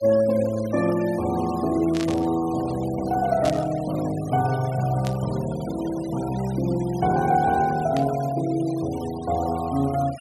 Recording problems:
denoising artefacts; signal-to-artefact ratio 18 dB
static burst; 4 times, first at 2 s; peak -6 dB vs average level

